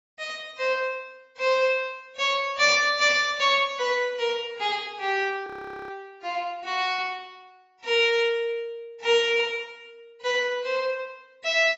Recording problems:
lossy codec; AAC, log-spectral distance 2 dB, nothing above 6.5 kHz
audio freezing; at 5.5 s

